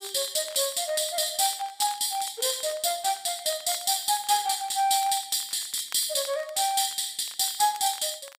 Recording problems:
crackle; vinyl, SNR 23 dB

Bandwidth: 15.5 kHz